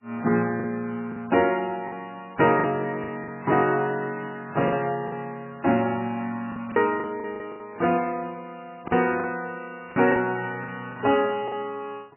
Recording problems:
codec artefacts; MP3, log-spectral distance 3 dB, nothing above 2.8 kHz
packet loss; 7% of the sound replaced, filled with the last packet

